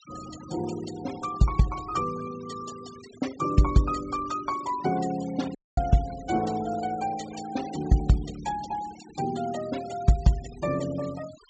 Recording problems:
low-pass filter; nothing above 8 kHz
denoising artefacts; signal-to-artefact ratio 17 dB
audio cutting out; at 5.5 s

